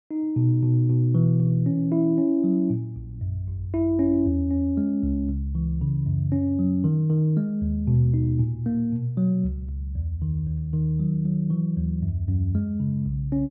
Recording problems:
none

